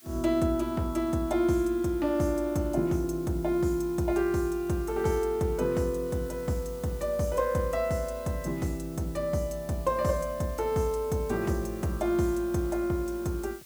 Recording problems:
background hiss; slope +2 dB per octave, SNR 21 dB

